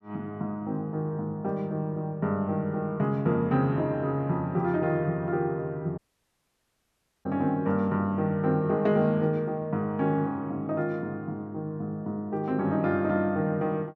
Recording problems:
audio cutting out; at 6 s for 1.5 s

